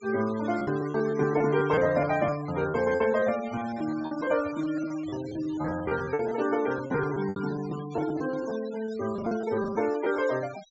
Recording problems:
treble cut off; nothing above 7.6 kHz
noise reduction artefacts; signal-to-artefact ratio 16 dB
lost packets; 15% of the sound replaced, filled with repeated pitch periods
handling noise; from 3 to 5.5 s; peak -13 dB vs average level

